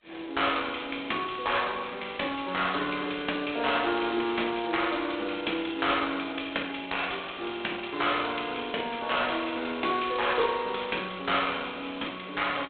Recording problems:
telephone audio; 240 Hz to 3.7 kHz, G.726

